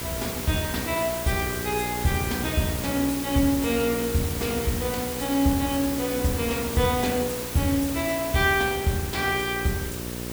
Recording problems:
hum; 60 Hz, harmonics up to 1.1 kHz, SNR 11 dB
background hiss; slope -2 dB per octave, SNR 6 dB

